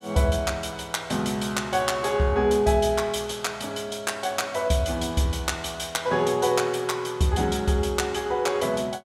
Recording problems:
none

